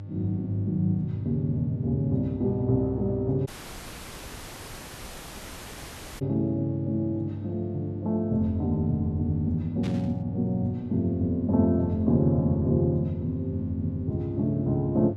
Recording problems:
electrical hum; 50 Hz, harmonics up to 600 Hz, SNR 10 dB
dropout; at 3.5 s for 2.5 s
burst of static; at 10 s; peak -11 dB vs average level

